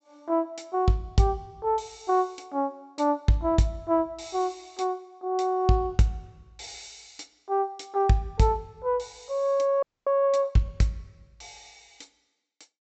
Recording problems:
treble cut off; nothing above 7.8 kHz
frozen audio; at 10 s

